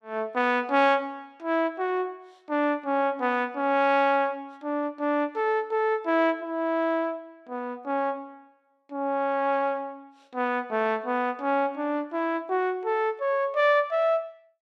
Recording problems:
none

